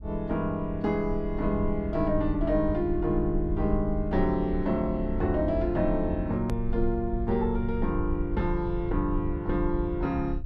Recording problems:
rumble; below 64 Hz, SNR 7 dB
click at an edit; at 6.5 s

